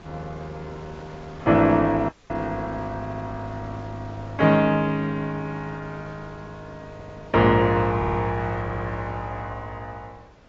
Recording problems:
codec artefacts; AAC, log-spectral distance 2 dB
wind on the microphone; below 1.1 kHz, SNR 22 dB
dropout; at 2 s
audio stuttering; 4 times, first at 3 s

